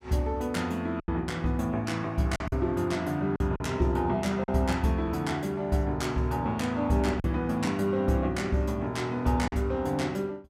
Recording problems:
lost packets; 3% of the sound replaced, filled with silence

